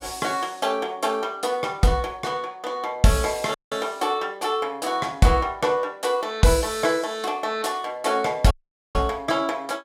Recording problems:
audio cutting out; at 3.5 s and at 8.5 s

